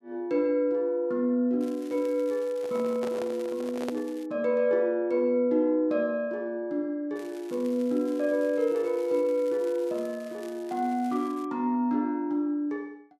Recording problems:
crackle; from 1.5 to 4.5 s and from 7 to 11 s; loose cable, SNR 25 dB
handling noise; from 2.5 to 4 s; peak -3 dB vs average level

